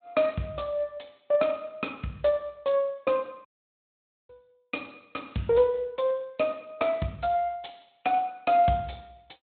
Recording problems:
low-pass filter; nothing above 3.9 kHz
lossy codec; Speex, log-spectral distance 5 dB
audio cutting out; at 3.5 s for 1 s

